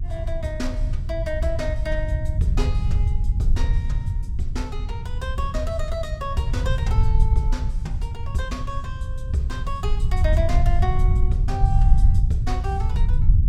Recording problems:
hum; 50 Hz, harmonics up to 350 Hz, SNR 21 dB
rumble; below 78 Hz, SNR -6 dB

